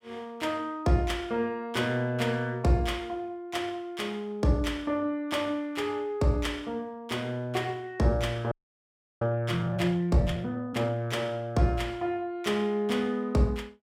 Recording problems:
audio freezing; at 8.5 s for 0.5 s

